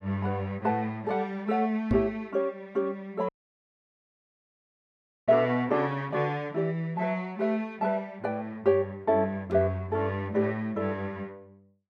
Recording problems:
microphone thump; at 2 s; peak +5 dB vs average level
audio cutting out; at 3.5 s for 2 s

